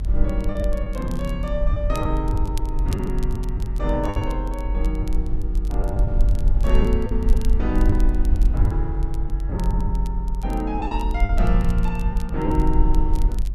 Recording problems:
rumble; below 48 Hz, SNR -4 dB
crackling; vinyl, SNR 20 dB
lost packets; 6% of the sound replaced, filled with the last packet

